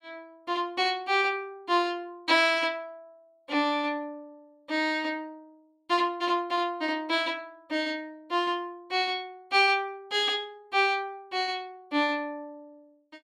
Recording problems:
none

